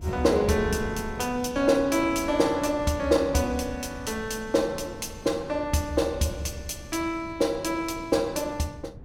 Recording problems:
wind on the microphone; below 230 Hz, SNR 16 dB

